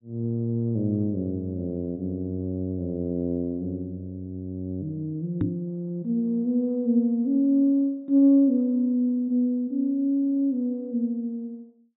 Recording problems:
treble missing; nothing above 4 kHz
knock on the microphone; at 5.5 s; peak +3 dB vs average level

